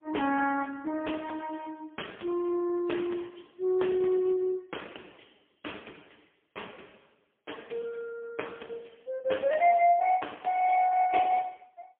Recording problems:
phone line; 240 Hz to 3.4 kHz, AMR-NB, then MP3

